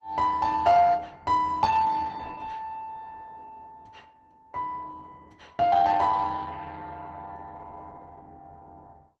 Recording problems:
lossy codec; Opus, log-spectral distance 3 dB, nothing above 7.3 kHz

